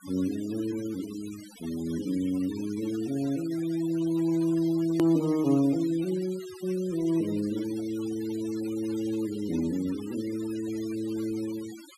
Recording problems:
noise reduction artefacts; signal-to-artefact ratio 18 dB
click at an edit; at 5 s

